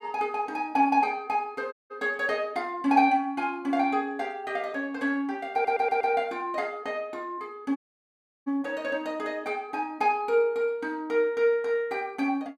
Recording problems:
audio cutting out; at 1.5 s and at 8 s for 0.5 s
stutter; at 5.5 s

